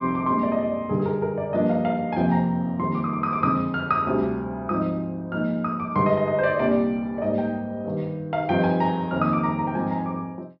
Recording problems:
treble missing; nothing above 5.7 kHz

